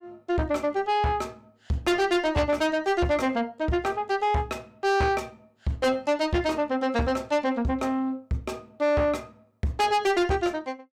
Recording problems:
distortion; soft clipping, signal-to-distortion ratio 6 dB

